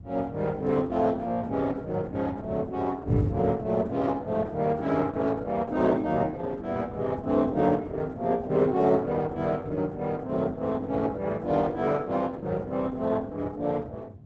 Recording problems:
lossy codec; Opus, log-spectral distance 3 dB, nothing above 7.6 kHz
wind on the microphone; below 150 Hz, SNR 12 dB

